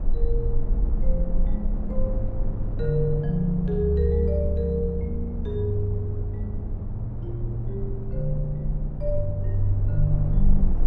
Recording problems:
low-frequency rumble; below 42 Hz, strongest tone 20 Hz, SNR 4 dB
wind on the microphone; below 260 Hz, SNR 10 dB

